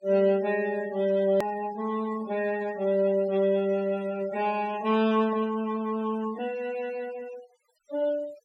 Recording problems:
noise reduction artefacts; signal-to-artefact ratio 20 dB
edit click; at 1.5 s

